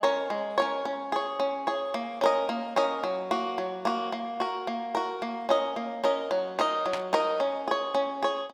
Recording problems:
burst of static; at 7 s; peak -2 dB vs average level

